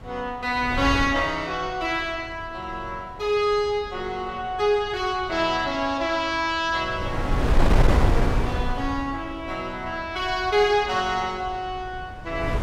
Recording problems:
wind noise; below 250 Hz, SNR 0 dB

